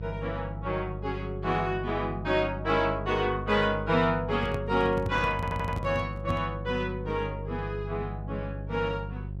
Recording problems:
hum; 50 Hz, harmonics up to 400 Hz, SNR 8 dB
handling noise; from 4.5 to 6.5 s; peak 0 dB vs average level
stutter; at 5.5 s

